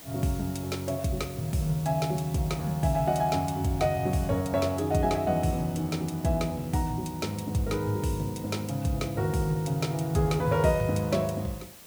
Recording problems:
background hiss; slope -2 dB per octave, SNR 18 dB

